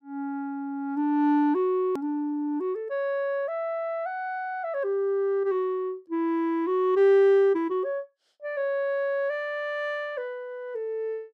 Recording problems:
edit click; at 2 s

